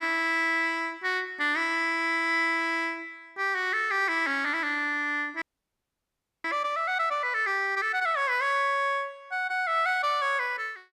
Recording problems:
audio freezing; at 5.5 s for 1 s

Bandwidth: 14.5 kHz